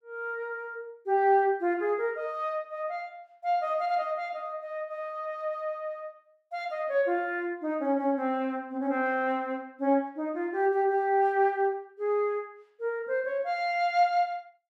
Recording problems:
none

